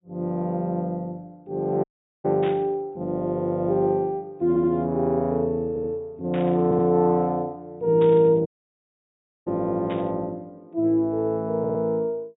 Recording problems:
low-pass filter; nothing above 4 kHz
audio cutting out; at 2 s and at 8.5 s for 1 s
burst of static; 4 times, first at 2.5 s; peak -10 dB vs average level
audio stuttering; 4 times, first at 4.5 s

